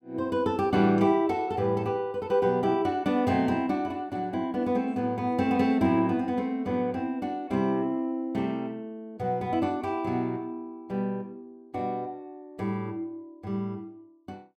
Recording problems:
none

